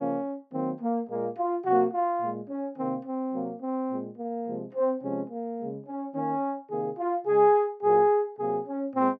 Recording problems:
none

